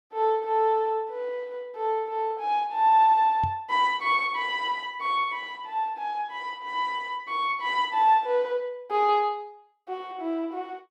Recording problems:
microphone thump; at 3.5 s; peak -4 dB vs average level

